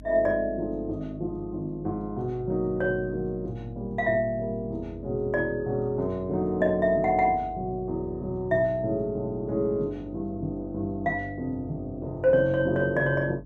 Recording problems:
hum; 50 Hz, harmonics up to 300 Hz, SNR 18 dB

